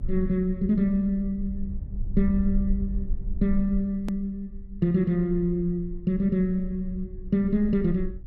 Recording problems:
low-frequency rumble; below 50 Hz, SNR 11 dB
click at an edit; at 4 s

